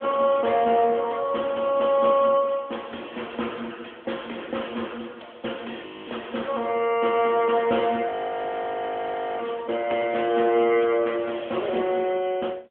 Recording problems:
phone line; 280 Hz to 3.3 kHz, AMR-NB
audio freezing; at 6 s and at 8 s for 1.5 s

